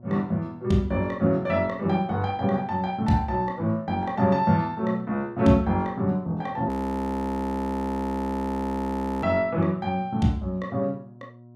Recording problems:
hum; 60 Hz, harmonics up to 960 Hz, SNR 23 dB
audio freezing; at 6.5 s for 2.5 s

